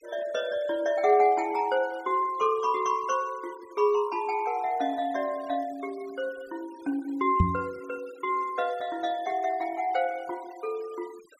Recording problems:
noise reduction artefacts; signal-to-artefact ratio 24 dB
microphone thump; at 7.5 s; peak +8 dB vs average level

